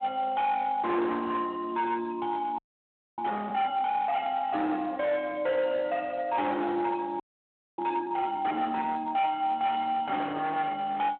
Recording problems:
phone line; 280 Hz to 3.5 kHz, Speex
distorted audio; hard clipping, signal-to-distortion ratio 11 dB
audio freezing; at 2.5 s for 0.5 s and at 7 s for 0.5 s

